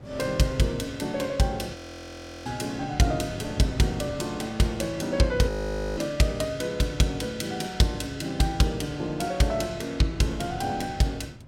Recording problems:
wind on the microphone; below 270 Hz, SNR 16 dB
audio freezing; at 2 s for 0.5 s and at 5.5 s

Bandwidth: 16.5 kHz